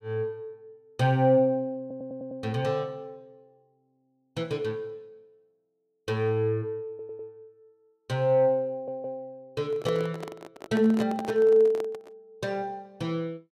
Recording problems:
audio stuttering; at 2 s, at 7 s and at 8.5 s
handling noise; from 9.5 to 12 s; peak -5 dB vs average level

